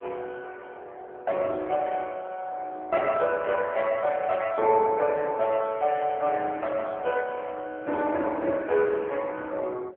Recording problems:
telephone audio; 340 Hz to 3.3 kHz, AMR-NB

